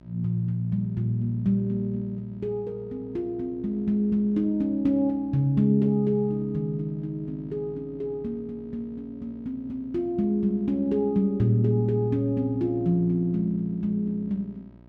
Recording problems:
electrical hum; 60 Hz, harmonics up to 1.3 kHz, SNR 23 dB

